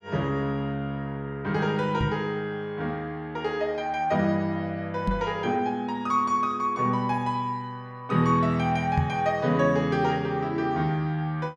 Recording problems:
knock on the microphone; at 2 s, at 5 s and at 9 s; peak +5 dB vs average level

